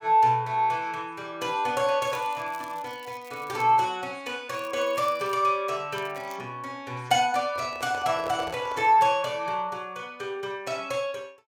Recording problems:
crackling; from 2 to 3.5 s, at 4.5 s and at 6 s; loose cable, SNR 25 dB
handling noise; from 7.5 to 9 s; peak -5 dB vs average level

